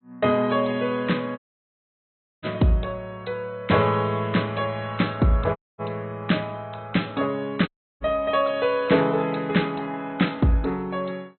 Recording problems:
treble missing; nothing above 4.1 kHz
lossy compression; AAC, log-spectral distance 3 dB
audio cutting out; at 1.5 s for 1 s, at 5.5 s and at 7.5 s

